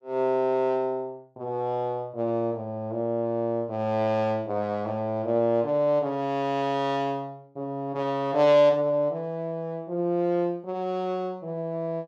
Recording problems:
none

